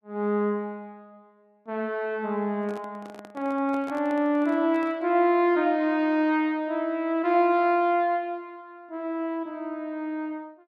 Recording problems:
handling noise; from 2.5 to 5 s; peak -11 dB vs average level

